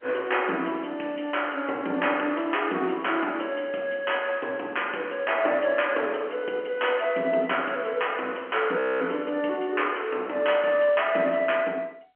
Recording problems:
phone line; 240 Hz to 3.1 kHz, G.711
audio freezing; at 9 s

